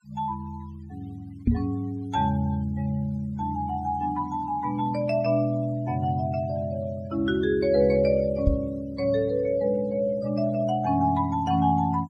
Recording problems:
noise reduction artefacts; signal-to-artefact ratio 26 dB
knock on the microphone; at 1.5 s and at 8.5 s; peak +7 dB vs average level

